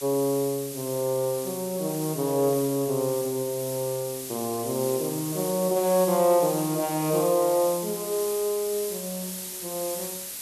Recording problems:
background hiss; slope +1 dB per octave, SNR 8 dB

